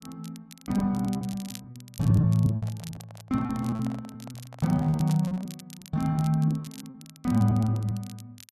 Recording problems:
crackle; vinyl, SNR 21 dB
packet loss; 14% of the sound replaced, filled with repeated pitch periods
microphone handling noise; from 2.5 to 5.5 s; peak -12 dB vs average level

